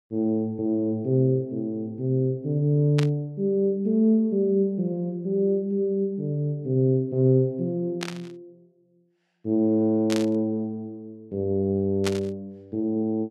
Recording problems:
static burst; 4 times, first at 3 s; peak -1 dB vs average level

